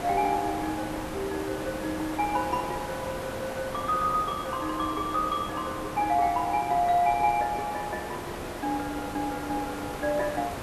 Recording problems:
background hiss; SNR 7 dB

